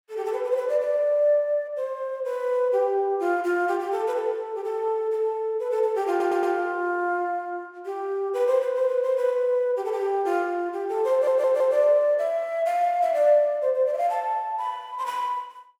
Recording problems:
stutter; at 6 s and at 11 s

